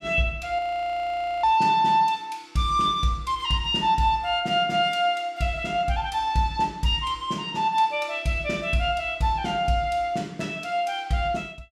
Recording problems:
frozen audio; at 0.5 s for 1 s

